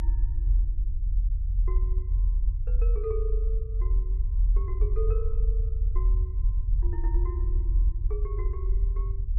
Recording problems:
rumble; below 46 Hz, strongest tone 40 Hz, SNR -13 dB

